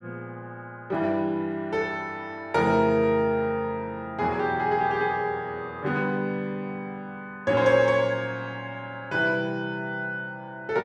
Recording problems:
none

